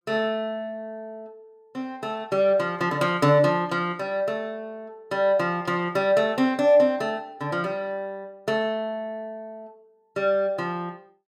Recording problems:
none

